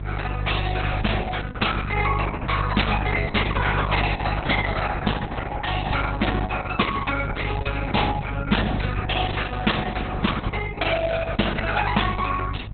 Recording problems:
lossy compression; Opus, log-spectral distance 6 dB, nothing above 4 kHz
electrical hum; 50 Hz, harmonics up to 650 Hz, SNR 5 dB

